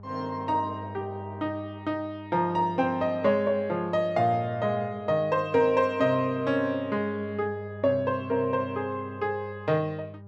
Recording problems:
electrical hum; 50 Hz, harmonics up to 1 kHz, SNR 16 dB

